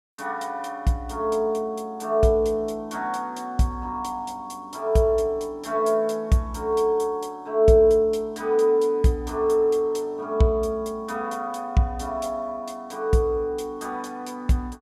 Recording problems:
none

